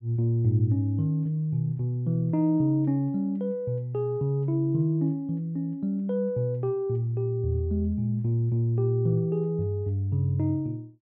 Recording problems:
none

